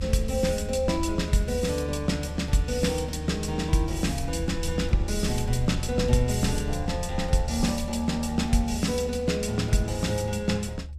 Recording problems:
rumble; below 76 Hz, strongest tone 74 Hz, SNR 8 dB

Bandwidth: 14 kHz